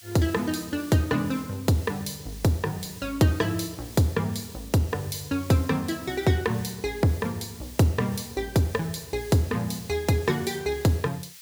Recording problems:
background hiss; slope +5 dB per octave, SNR 18 dB

